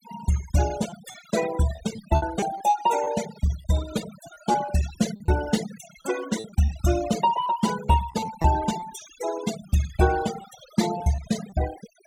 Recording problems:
noise reduction artefacts; signal-to-artefact ratio 11 dB
packet loss; 6% of the sound replaced, filled with repeated pitch periods

